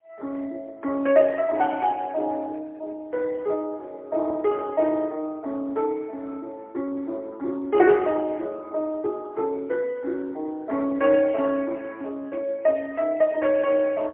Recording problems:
phone line; 240 Hz to 3 kHz, AMR-NB, then MP3

